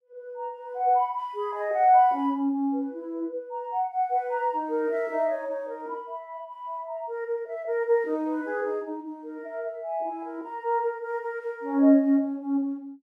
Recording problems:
none

